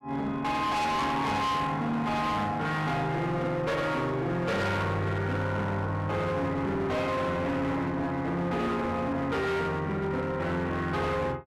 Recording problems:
distorted audio; hard clipping, uneven, signal-to-distortion ratio 7 dB

